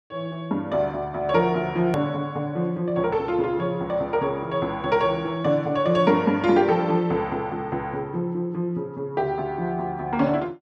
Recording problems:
hard cut with a click; at 2 s

